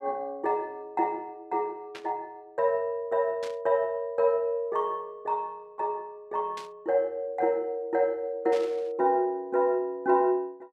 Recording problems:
burst of static; 4 times, first at 2 s; peak -9 dB vs average level

